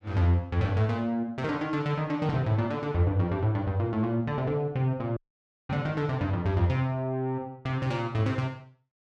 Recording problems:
audio cutting out; at 5 s for 0.5 s

